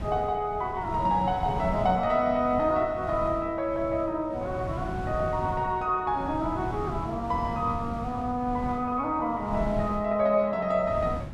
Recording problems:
wind on the microphone; below 230 Hz, SNR 10 dB

